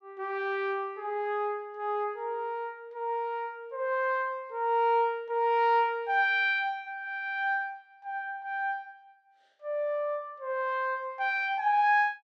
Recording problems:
none

